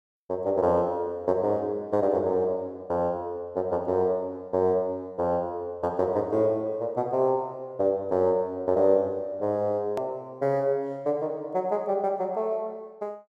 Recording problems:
hard cut with a click; at 10 s

